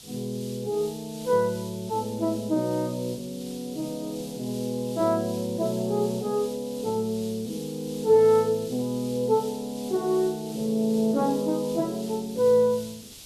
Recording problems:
hiss; SNR 17 dB

